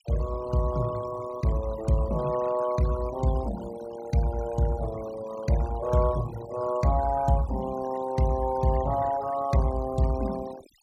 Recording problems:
noise reduction artefacts; signal-to-artefact ratio 16 dB

